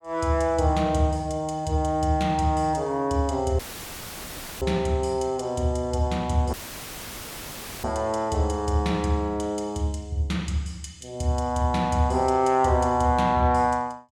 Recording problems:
dropout; at 3.5 s for 1 s and at 6.5 s for 1.5 s; filled with static

